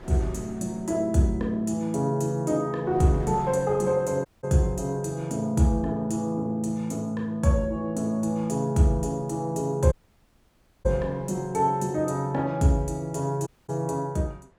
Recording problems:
wind noise; below 630 Hz, SNR 24 dB
audio cutting out; at 4.5 s, at 10 s for 1 s and at 13 s

